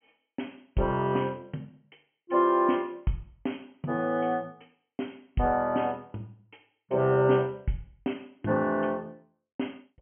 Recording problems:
treble cut off; nothing above 3.2 kHz

